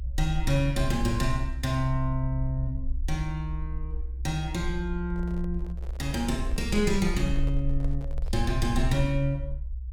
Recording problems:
low-frequency rumble; below 62 Hz, SNR 4 dB
handling noise; from 5 to 8.5 s; peak -11 dB vs average level

